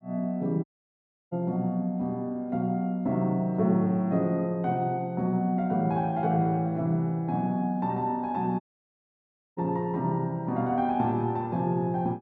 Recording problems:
audio cutting out; at 0.5 s for 0.5 s and at 8.5 s for 1 s

